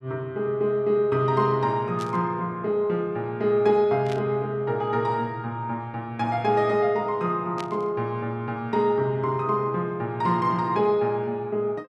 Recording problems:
static burst; at 2 s, at 4 s and at 7.5 s; peak -8 dB vs average level

